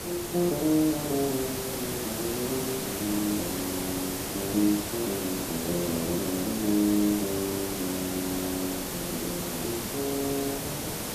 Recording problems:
hiss; slope -4 dB per octave, SNR 2 dB

